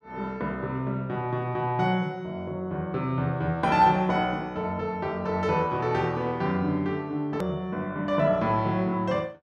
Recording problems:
edit click; at 7.5 s

